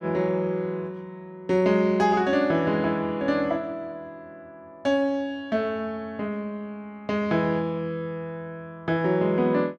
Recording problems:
none

